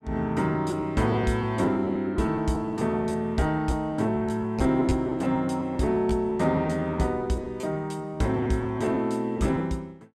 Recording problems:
lost packets; 10% of the sound replaced, filled with repeated pitch periods

